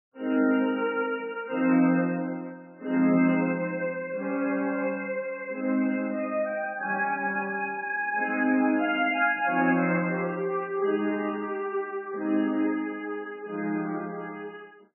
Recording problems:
lossy compression; MP3, log-spectral distance 3 dB, nothing above 2.6 kHz

